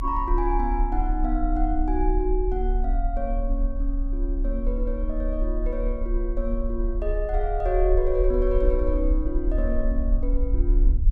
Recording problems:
rumble; below 40 Hz, strongest tone 34 Hz, SNR -1 dB

